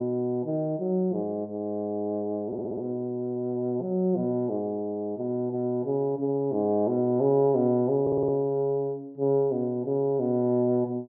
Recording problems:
stutter; at 2.5 s and at 8 s

